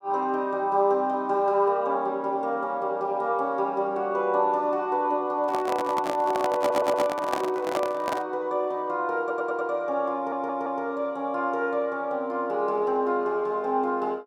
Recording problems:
microphone handling noise; from 5.5 to 8.5 s; peak +1 dB vs average level
audio stuttering; at 6.5 s, at 9 s and at 10 s

